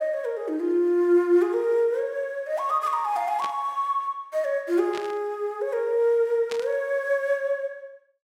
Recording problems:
static burst; at 3.5 s, at 5 s and at 6.5 s; peak -7 dB vs average level

